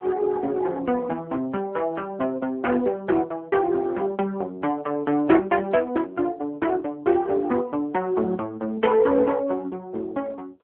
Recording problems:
phone line; 220 Hz to 3.3 kHz, AMR-NB

